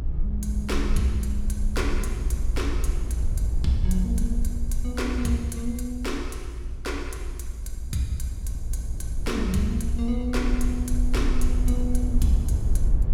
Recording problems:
hum; 60 Hz, harmonics up to 960 Hz, SNR 25 dB
rumble; below 60 Hz, SNR -1 dB

